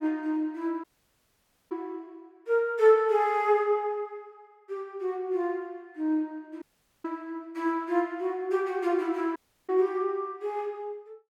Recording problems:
dropout; at 1 s for 1 s, at 6.5 s and at 9.5 s

